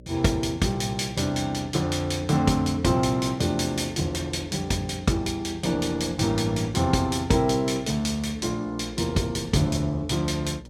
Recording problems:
hum; 60 Hz, harmonics up to 600 Hz, SNR 22 dB

